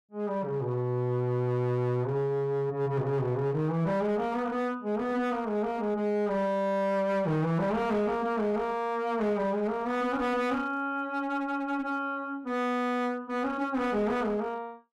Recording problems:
distortion; hard clipping, uneven, signal-to-distortion ratio 10 dB

